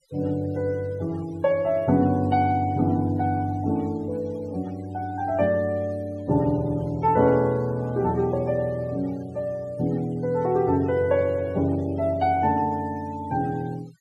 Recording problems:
noise reduction artefacts; signal-to-artefact ratio 26 dB

